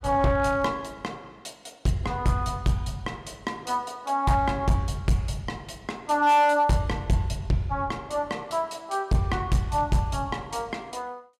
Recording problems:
distortion; hard clipping, signal-to-distortion ratio 11 dB

